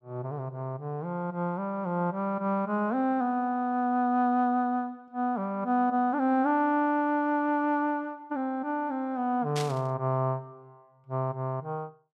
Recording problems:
burst of static; at 9.5 s; peak -3 dB vs average level

